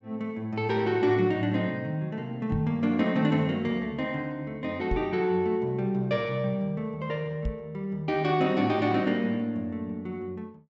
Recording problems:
low-pass filter; nothing above 7.5 kHz
microphone bump; at 2.5 s, at 5 s and at 7.5 s; peak 0 dB vs average level

